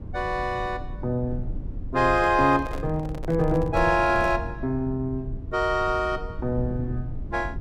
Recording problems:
low-frequency rumble; below 110 Hz, SNR 10 dB
microphone handling noise; from 2 to 4.5 s; peak -7 dB vs average level

